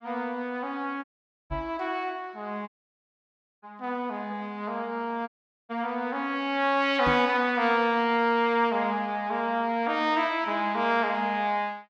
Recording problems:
dropout; at 1 s, at 2.5 s for 1 s and at 5.5 s
knock on the microphone; at 1.5 s and at 7 s; peak -2 dB vs average level

